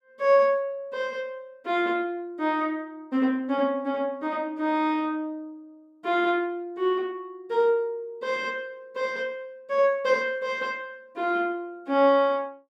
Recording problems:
none

